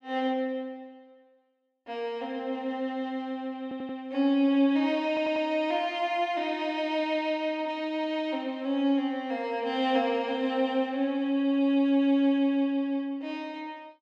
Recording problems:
stutter; at 3.5 s and at 5 s

